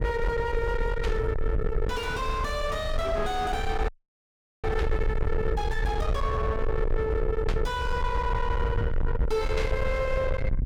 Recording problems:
distortion; soft clipping, signal-to-distortion ratio 5 dB
rumble; below 160 Hz, SNR 1 dB
burst of static; 4 times, first at 1 s; peak -6 dB vs average level
frozen audio; at 4 s for 1 s

